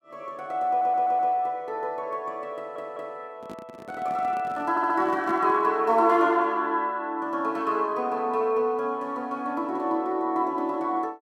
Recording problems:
stutter; at 0.5 s, at 2.5 s and at 4.5 s
microphone handling noise; from 3.5 to 5.5 s; peak -8 dB vs average level

